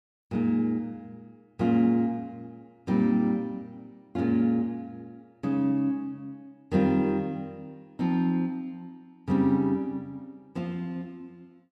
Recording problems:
none

